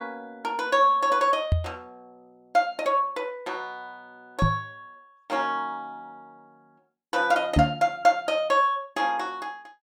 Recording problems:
microphone bump; at 1.5 s, at 4.5 s and at 7.5 s; peak +7 dB vs average level

